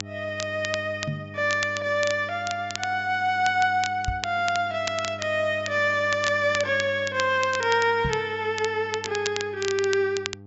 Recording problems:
treble missing; nothing above 8 kHz
hum; 50 Hz, harmonics up to 800 Hz, SNR 18 dB
crackling; vinyl, SNR 11 dB
knock on the microphone; at 1 s, at 4 s and at 8 s; peak 0 dB vs average level

